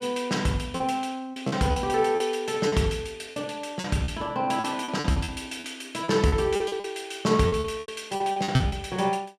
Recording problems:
lost packets; 12% of the sound replaced, filled with repeated pitch periods

